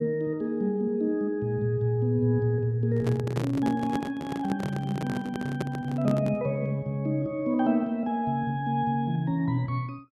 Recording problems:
handling noise; from 3 to 6.5 s; peak 0 dB vs average level

